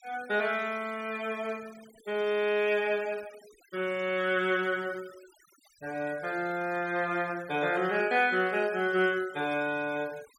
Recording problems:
noise reduction artefacts; signal-to-artefact ratio 22 dB

